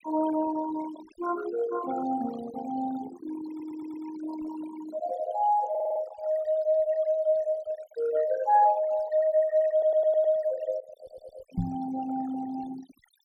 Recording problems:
denoising artefacts; signal-to-artefact ratio 16 dB
stutter; 4 times, first at 3.5 s
microphone thump; at 12 s; peak +3 dB vs average level

